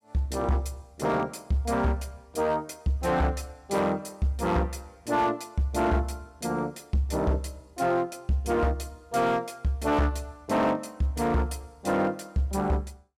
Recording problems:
distorted audio; hard clipping, signal-to-distortion ratio 12 dB

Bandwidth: 16 kHz